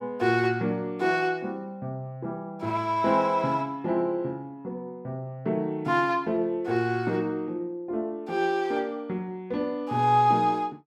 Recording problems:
none

